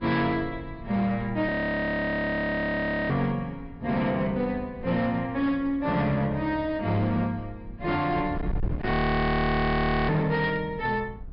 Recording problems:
low-pass filter; nothing above 5.1 kHz
distortion; hard clipping, signal-to-distortion ratio 12 dB
wind on the microphone; below 230 Hz, SNR 9 dB
audio freezing; at 1.5 s for 1.5 s and at 9 s for 1 s

